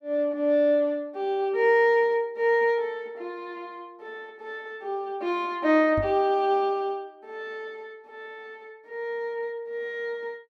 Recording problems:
knock on the microphone; at 6 s; peak -3 dB vs average level

